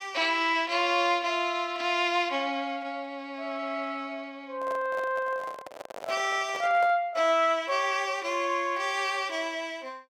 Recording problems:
handling noise; from 4.5 to 7 s; peak -7 dB vs average level

